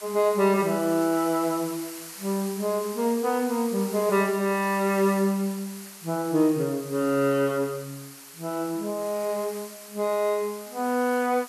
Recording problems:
hiss; SNR 15 dB

